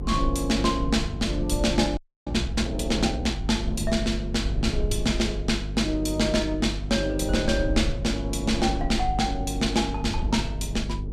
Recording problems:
hum; 50 Hz, harmonics up to 450 Hz, SNR 7 dB
low-frequency rumble; below 86 Hz, SNR 9 dB
frozen audio; at 2 s

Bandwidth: 14.5 kHz